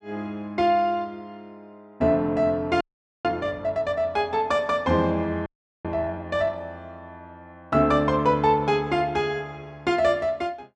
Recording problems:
audio freezing; at 3 s and at 5.5 s

